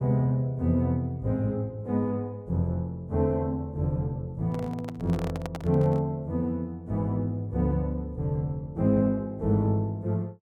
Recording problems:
microphone handling noise; from 4.5 to 6 s; peak -5 dB vs average level

